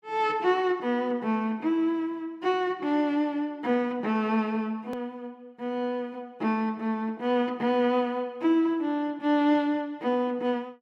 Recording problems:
click at an edit; at 5 s

